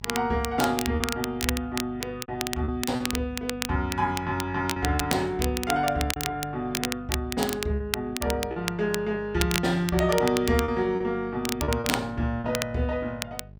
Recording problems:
hum; 50 Hz, harmonics up to 650 Hz, SNR 18 dB
crackling; vinyl, SNR 6 dB
packet loss; 6% of the sound replaced, filled with repeated pitch periods

